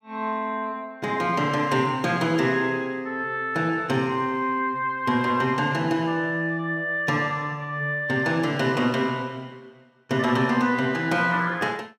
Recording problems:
none

